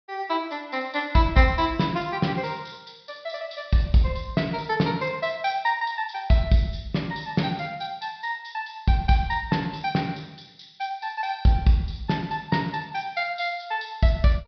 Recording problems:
low-pass filter; nothing above 5.5 kHz

